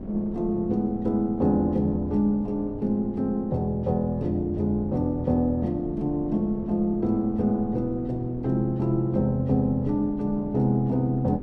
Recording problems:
wind noise; below 310 Hz, SNR 13 dB

